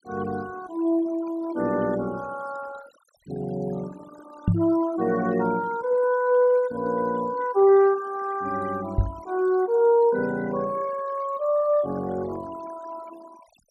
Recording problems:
noise reduction artefacts; signal-to-artefact ratio 21 dB
microphone thump; at 4.5 s and at 9 s; peak +6 dB vs average level

